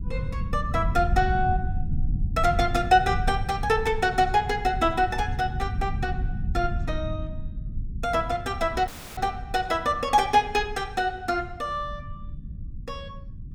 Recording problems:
low-frequency rumble; below 110 Hz, SNR 7 dB
dropout; at 9 s

